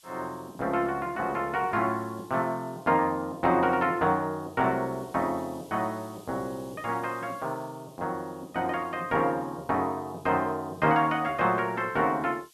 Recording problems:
background hiss; SNR 27 dB

